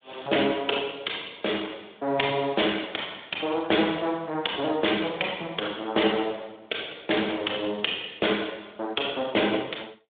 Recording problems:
phone line; 280 Hz to 3.6 kHz, Speex

